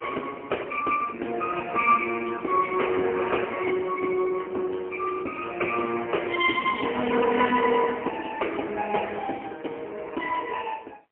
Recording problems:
telephone audio; 240 Hz to 3 kHz, AMR-NB, then MP3
crackle; from 5.5 to 7 s; loose cable, SNR 27 dB

